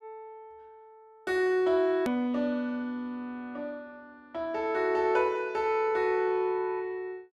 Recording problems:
hard cut with a click; at 2 s

